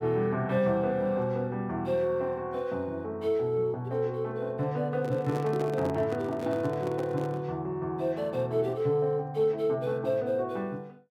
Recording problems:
microphone handling noise; from 5 to 7.5 s; peak -4 dB vs average level

